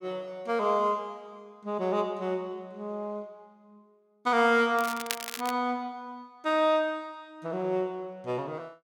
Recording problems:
crackle; at 5 s; loose cable, SNR 7 dB

